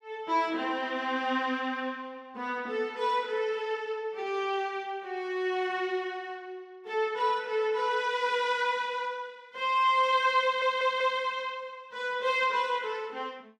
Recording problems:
stutter; at 10 s

